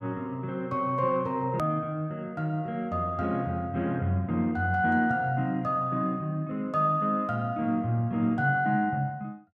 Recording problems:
edit click; at 1.5 s

